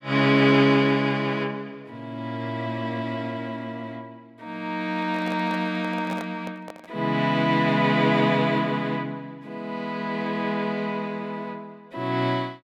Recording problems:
microphone handling noise; from 5 to 7 s; peak -7 dB vs average level

